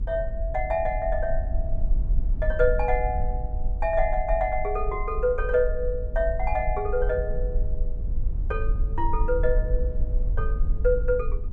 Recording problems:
low-frequency rumble; below 48 Hz, SNR 2 dB

